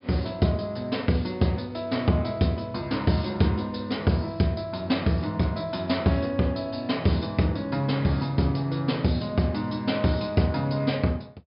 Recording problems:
treble missing; nothing above 5.5 kHz

